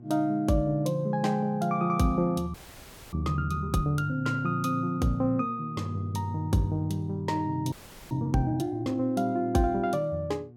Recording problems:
hum; 60 Hz, harmonics up to 720 Hz, SNR 20 dB
audio freezing; at 2.5 s for 0.5 s and at 7.5 s

